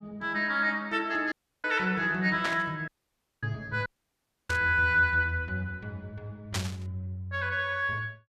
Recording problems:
audio cutting out; at 1.5 s, at 3 s for 0.5 s and at 4 s for 0.5 s
static burst; at 2.5 s, at 4.5 s and at 6.5 s; peak +1 dB vs average level

